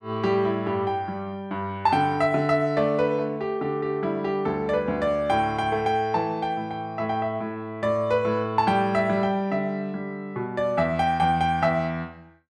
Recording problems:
none

